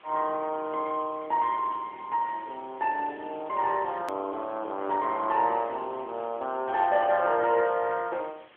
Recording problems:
phone line; 190 Hz to 3.6 kHz, AMR-NB
background hiss; SNR 26 dB
hard cut with a click; at 4 s

